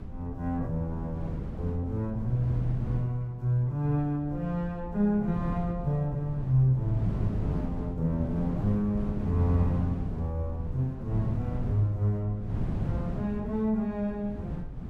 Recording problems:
rumble; below 78 Hz, SNR 16 dB
wind noise; below 200 Hz, SNR 7 dB

